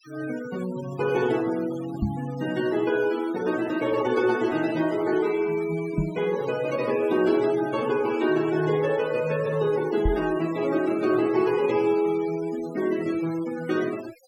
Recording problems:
noise reduction artefacts; signal-to-artefact ratio 18 dB
microphone bump; at 2 s, at 6 s and at 10 s; peak +3 dB vs average level

